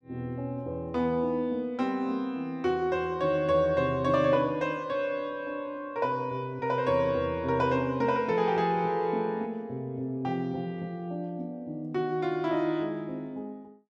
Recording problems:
none

